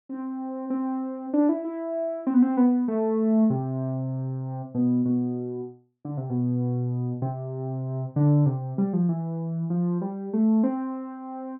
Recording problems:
treble missing; nothing above 4 kHz

